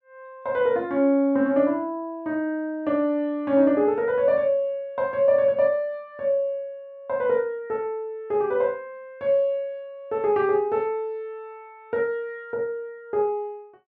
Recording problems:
none

